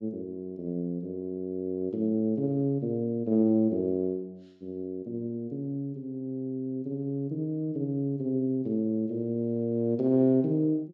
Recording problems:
none

